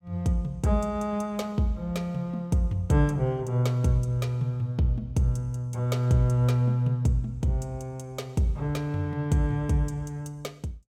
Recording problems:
none

